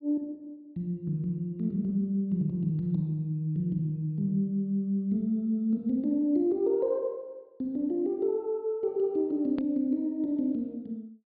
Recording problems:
low-pass filter; nothing above 4.8 kHz
hard cut with a click; at 9.5 s

